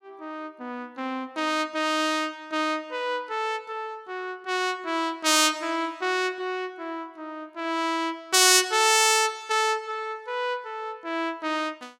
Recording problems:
none

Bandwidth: 16.5 kHz